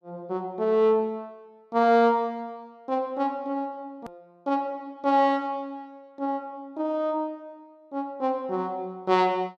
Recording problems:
edit click; at 4 s

